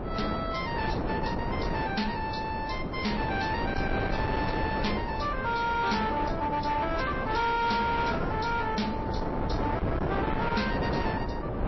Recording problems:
lossy compression; MP3, then MP3, log-spectral distance 3 dB, nothing above 5.7 kHz
distortion; soft clipping, signal-to-distortion ratio 11 dB
wind on the microphone; below 700 Hz, SNR 2 dB

